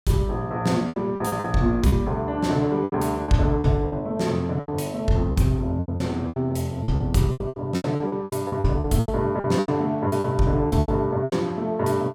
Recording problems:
lost packets; 15% of the sound replaced, filled with repeated pitch periods

